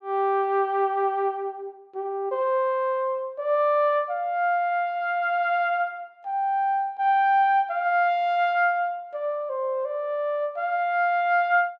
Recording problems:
none

